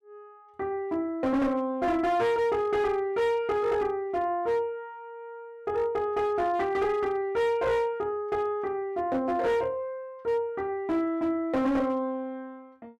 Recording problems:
distortion; hard clipping, signal-to-distortion ratio 11 dB

